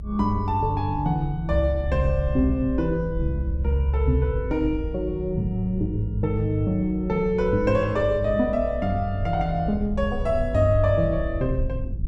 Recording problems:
rumble; below 78 Hz, SNR 8 dB

